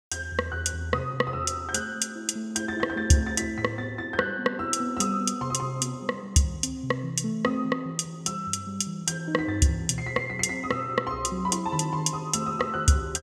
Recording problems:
none

